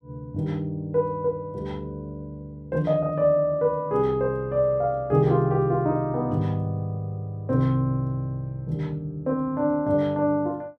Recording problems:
none

